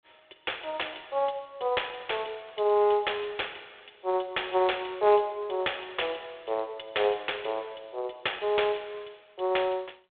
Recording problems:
phone line; 340 Hz to 3.6 kHz, G.726

